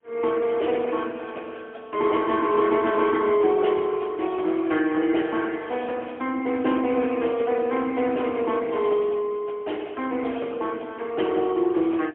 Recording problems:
phone line; 260 Hz to 3.3 kHz, AMR-NB, then MP3

